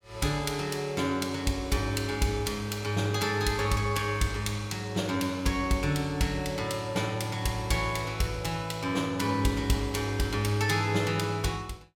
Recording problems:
none

